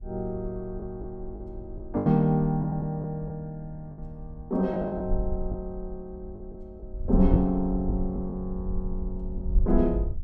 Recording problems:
wind on the microphone; below 58 Hz, SNR 6 dB
lost packets; 6% of the sound replaced, filled with the last packet

